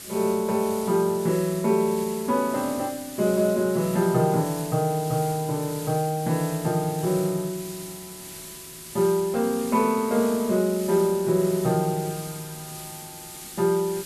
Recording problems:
hiss; SNR 13 dB

